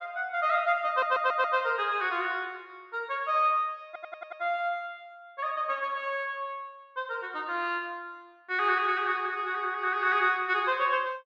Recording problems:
audio stuttering; at 1 s and at 4 s

